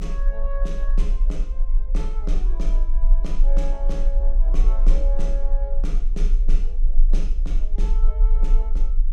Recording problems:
low-frequency rumble; below 34 Hz, strongest tone 26 Hz, SNR -13 dB

